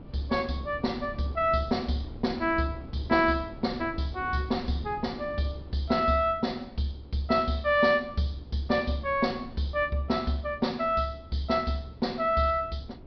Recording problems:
treble cut off; nothing above 5.5 kHz
wind on the microphone; below 310 Hz, SNR 17 dB

